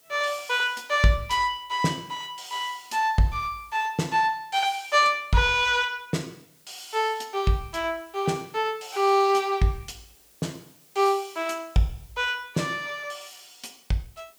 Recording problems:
hiss; SNR 29 dB

